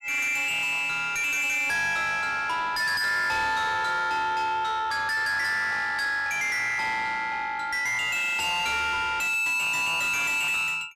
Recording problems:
distortion; soft clipping, signal-to-distortion ratio 5 dB

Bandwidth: 14.5 kHz